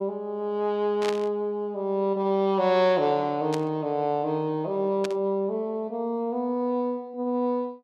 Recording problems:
static burst; at 1 s, at 3.5 s and at 5 s; peak -4 dB vs average level

